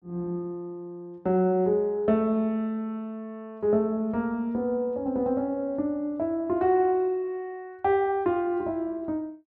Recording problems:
none

